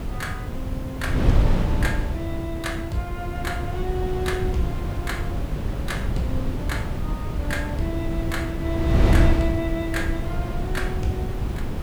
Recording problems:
background hiss; slope +2 dB per octave, SNR 21 dB
wind noise; below 160 Hz, SNR -4 dB

